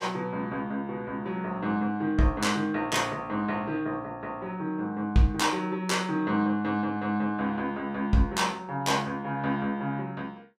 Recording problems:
none

